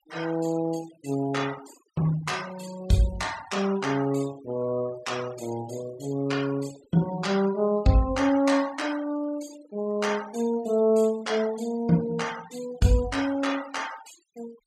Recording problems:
denoising artefacts; signal-to-artefact ratio 17 dB

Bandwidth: 14.5 kHz